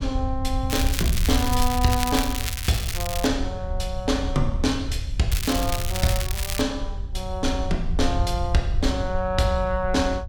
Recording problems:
low-frequency rumble; below 80 Hz, SNR 3 dB
crackling; from 0.5 to 3.5 s and from 5.5 to 6.5 s; loose cable, SNR 4 dB

